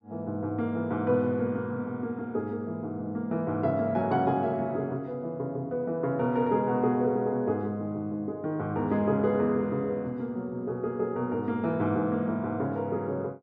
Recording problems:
none

